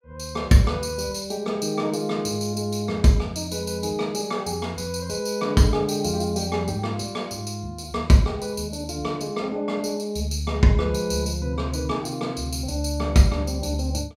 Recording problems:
none

